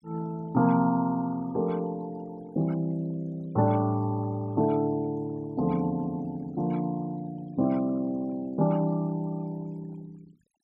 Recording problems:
denoising artefacts; signal-to-artefact ratio 25 dB

